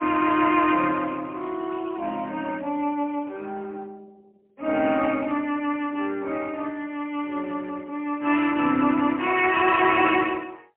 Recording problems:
telephone audio; 190 Hz to 3.2 kHz, AMR-NB, then MP3

